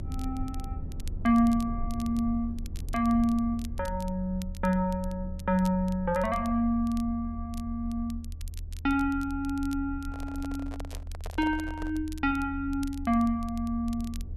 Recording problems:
rumble; below 82 Hz, SNR 10 dB
crackling; vinyl, SNR 23 dB
handling noise; from 10 to 12 s; peak -9 dB vs average level

